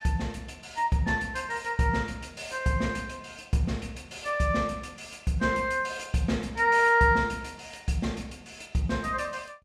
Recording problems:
none

